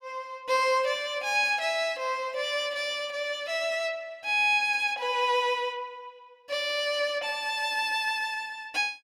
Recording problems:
none

